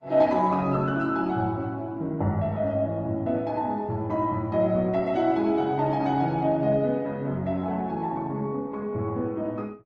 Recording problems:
codec artefacts; Vorbis, then Opus, log-spectral distance 2 dB

